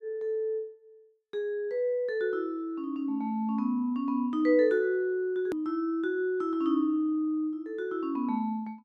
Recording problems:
hard cut with a click; at 5.5 s

